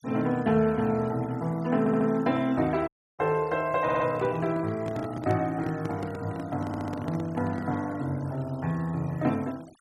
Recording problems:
noise reduction artefacts; signal-to-artefact ratio 23 dB
audio stuttering; at 2 s, at 4 s and at 6.5 s
audio cutting out; at 3 s
handling noise; from 3.5 to 8 s; peak -4 dB vs average level

